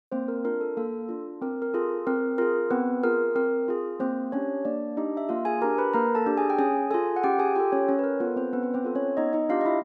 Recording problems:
none

